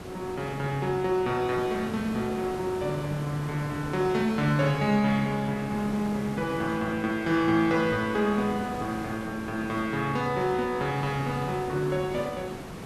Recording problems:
background hiss; slope -6 dB per octave, SNR 11 dB

